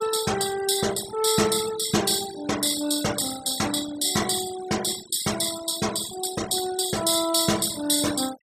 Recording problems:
noise reduction artefacts; signal-to-artefact ratio 13 dB

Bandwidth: 14.5 kHz